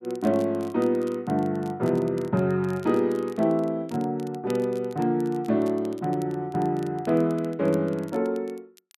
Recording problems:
crackling; vinyl, SNR 26 dB

